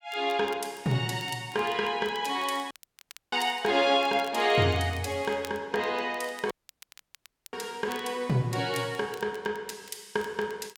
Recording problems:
crackle; vinyl, SNR 23 dB
dropout; at 2.5 s for 0.5 s and at 6.5 s for 1 s

